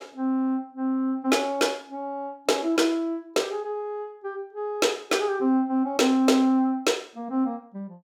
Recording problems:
none

